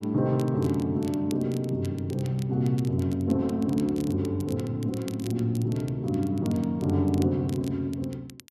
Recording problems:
crackling; vinyl, SNR 22 dB

